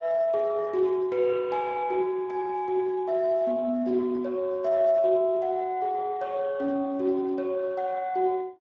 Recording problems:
lossy compression; Speex, log-spectral distance 2 dB

